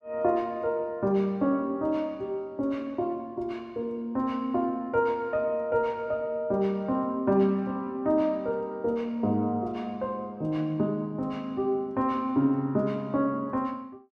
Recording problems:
none

